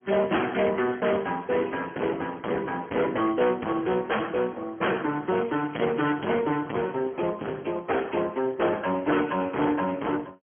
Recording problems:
telephone audio; 170 Hz to 3.3 kHz, Speex
distortion; hard clipping, signal-to-distortion ratio 4 dB

